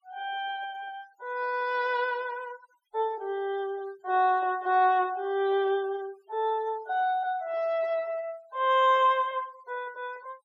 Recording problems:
denoising artefacts; signal-to-artefact ratio 25 dB

